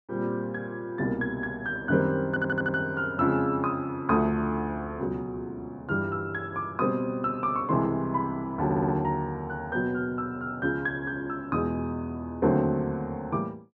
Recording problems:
audio stuttering; at 2.5 s and at 8.5 s

